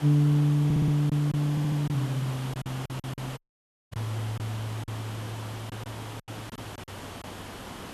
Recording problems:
hum; 60 Hz, harmonics up to 480 Hz, SNR 32 dB
hiss; slope -5 dB per octave, SNR 12 dB
lost packets; 9% of the sound replaced, filled with silence
stutter; at 0.5 s and at 1.5 s
dropout; at 3.5 s for 0.5 s

